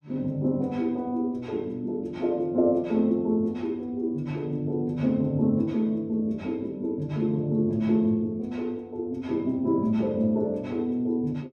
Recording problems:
none

